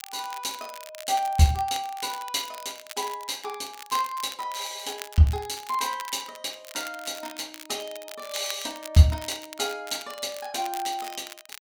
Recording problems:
crackle; vinyl, SNR 14 dB

